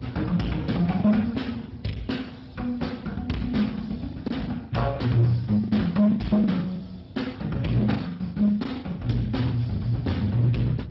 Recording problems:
lossy compression; MP2, then Speex, log-spectral distance 4 dB
distorted audio; hard clipping, signal-to-distortion ratio 10 dB
hum; 60 Hz, harmonics up to 2.2 kHz, SNR 32 dB
low-frequency rumble; below 170 Hz, SNR 16 dB
packet loss; 14% of the sound replaced, filled with the last packet

